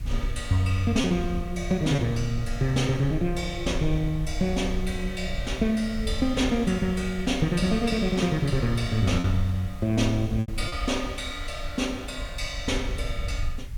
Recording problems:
background hiss; SNR 25 dB
low-frequency rumble; below 72 Hz, SNR 9 dB
lost packets; 1.6% of the sound replaced, filled with repeated pitch periods

